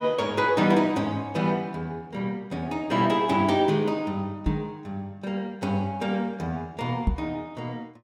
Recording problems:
knock on the microphone; at 4.5 s and at 7 s; peak +6 dB vs average level

